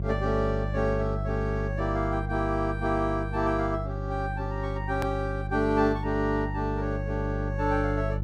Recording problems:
electrical hum; 50 Hz, harmonics up to 500 Hz, SNR 3 dB
click at an edit; at 5 s

